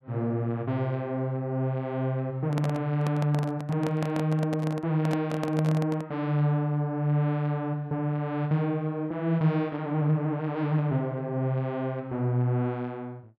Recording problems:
microphone handling noise; from 2.5 to 6 s; peak -2 dB vs average level

